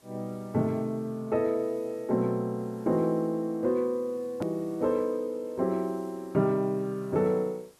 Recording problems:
background hiss; slope -3 dB per octave, SNR 29 dB
edit click; at 4.5 s

